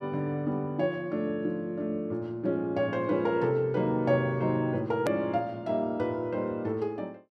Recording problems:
edit click; at 5 s

